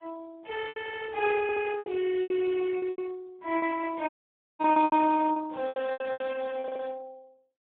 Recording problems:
phone line; 280 Hz to 2.6 kHz, Speex
packet loss; 14% of the sound replaced, filled with repeated pitch periods
stutter; at 1 s, at 1.5 s and at 6.5 s
audio cutting out; at 4 s for 0.5 s

